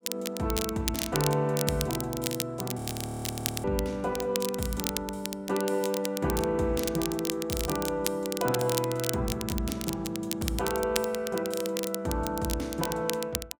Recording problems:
crackling; vinyl, SNR 5 dB
audio freezing; at 3 s for 1 s

